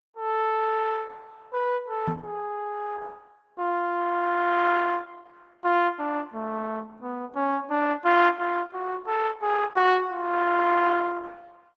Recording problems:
lossy compression; Opus, log-spectral distance 4 dB, nothing above 7.3 kHz
knock on the microphone; at 2 s; peak -1 dB vs average level

